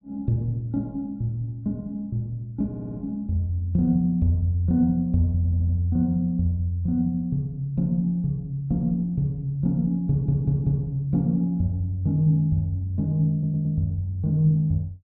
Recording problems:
audio stuttering; 4 times, first at 2.5 s

